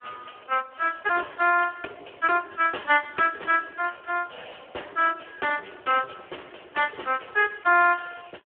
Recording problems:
telephone audio; 300 Hz to 2.9 kHz, Speex

